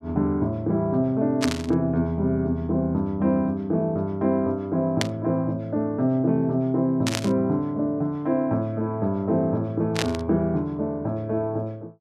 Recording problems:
burst of static; 4 times, first at 1.5 s; peak +3 dB vs average level

